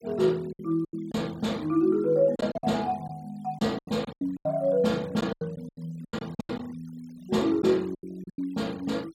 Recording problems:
noise reduction artefacts; signal-to-artefact ratio 25 dB
packet loss; 13% of the sound replaced, filled with silence

